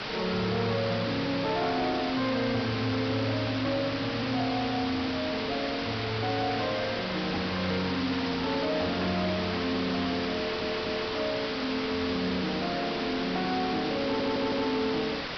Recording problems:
low-pass filter; nothing above 5.5 kHz
distortion; soft clipping, signal-to-distortion ratio 6 dB
background hiss; slope -4 dB per octave, SNR 3 dB
stutter; at 10 s and at 14 s

